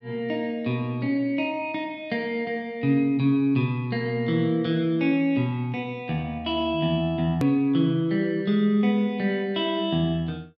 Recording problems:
click at an edit; at 7.5 s

